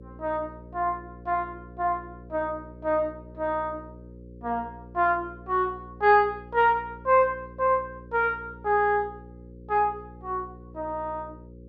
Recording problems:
hum; 60 Hz, harmonics up to 540 Hz, SNR 19 dB

